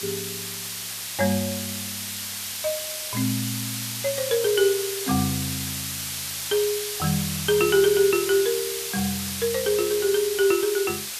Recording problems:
background hiss; slope +3 dB per octave, SNR 4 dB

